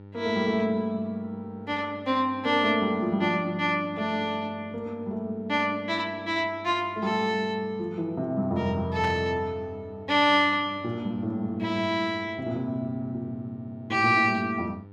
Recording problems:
hum; 50 Hz, harmonics up to 1 kHz, SNR 20 dB
static burst; at 9 s; peak -7 dB vs average level

